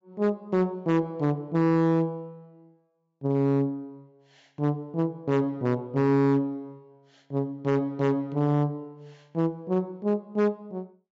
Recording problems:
treble missing; nothing above 8 kHz
distortion; hard clipping, signal-to-distortion ratio 11 dB

